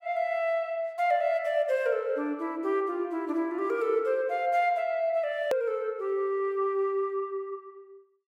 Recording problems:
hard cut with a click; at 5.5 s

